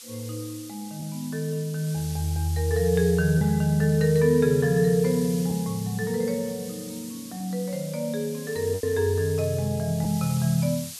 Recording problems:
background hiss; slope +4 dB per octave, SNR 15 dB
packet loss; 1.6% of the sound replaced, filled with repeated pitch periods

